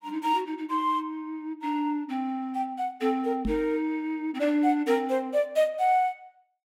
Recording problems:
knock on the microphone; at 3.5 s; peak +1 dB vs average level

